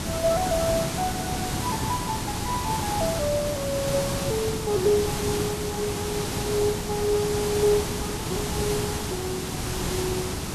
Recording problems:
codec artefacts; MP2, log-spectral distance 2 dB
background hiss; SNR 1 dB

